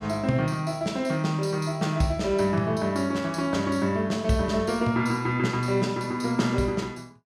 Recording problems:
none

